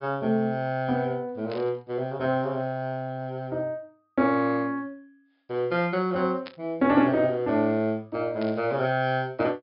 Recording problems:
treble cut off; nothing above 5.5 kHz
static burst; at 1.5 s, at 6.5 s and at 8.5 s; peak -10 dB vs average level

